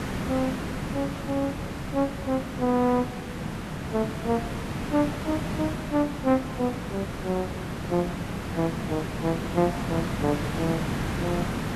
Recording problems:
hiss; slope -6 dB per octave, SNR 3 dB

